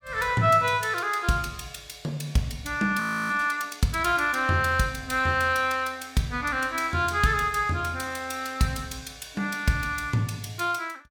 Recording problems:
frozen audio; at 3 s

